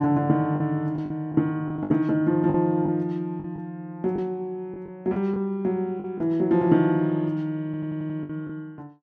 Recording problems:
packet loss; 7% of the sound replaced, filled with the last packet
audio stuttering; at 7.5 s

